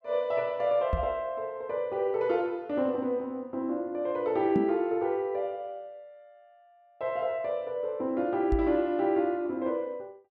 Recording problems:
knock on the microphone; at 1 s, at 4.5 s and at 8.5 s; peak +5 dB vs average level

